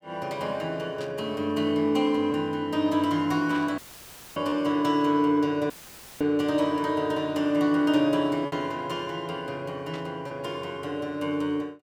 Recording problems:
packet loss; 1% of the sound replaced, filled with repeated pitch periods
burst of static; 4 times, first at 1 s; peak -12 dB vs average level
dropout; at 4 s for 0.5 s and at 5.5 s for 0.5 s; filled with static

